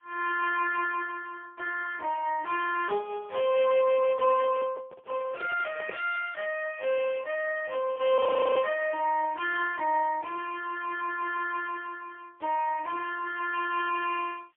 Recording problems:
phone line; 170 Hz to 2.6 kHz, AMR-NB, then MP3
background hiss; SNR 46 dB
microphone handling noise; from 4.5 to 6 s; peak -7 dB vs average level
frozen audio; at 8 s

